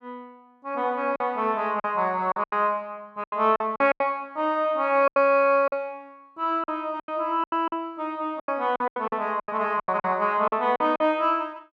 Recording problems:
packet loss; 12% of the sound replaced, filled with silence

